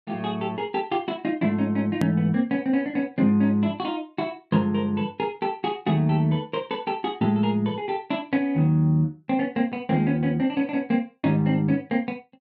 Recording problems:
click at an edit; at 2 s

